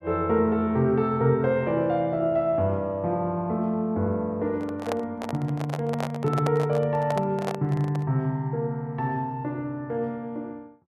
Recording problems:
handling noise; from 4.5 to 8 s; peak -1 dB vs average level

